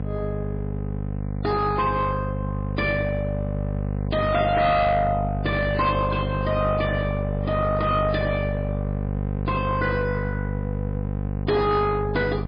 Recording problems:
codec artefacts; MP3, log-spectral distance 2 dB, nothing above 4.1 kHz
distorted audio; soft clipping, signal-to-distortion ratio 11 dB
hum; 50 Hz, harmonics up to 1.1 kHz, SNR 3 dB

